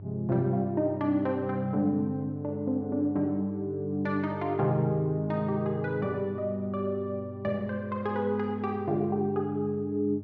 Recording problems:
electrical hum; 50 Hz, harmonics up to 600 Hz, SNR 15 dB

